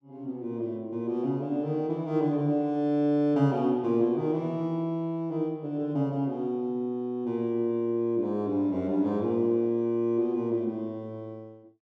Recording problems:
none

